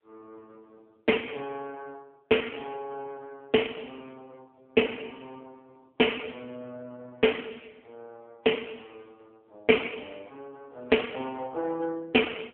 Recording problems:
phone line; 300 Hz to 3.3 kHz, AMR-NB

